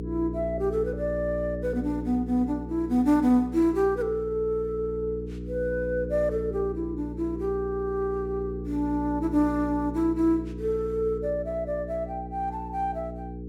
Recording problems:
hum; 60 Hz, harmonics up to 480 Hz, SNR 9 dB

